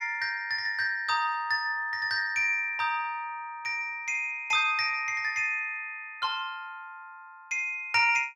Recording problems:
none

